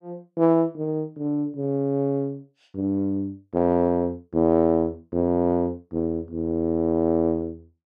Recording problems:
none

